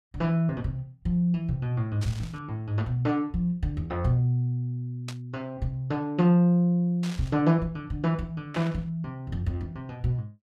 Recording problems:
static burst; 4 times, first at 2 s; peak -7 dB vs average level

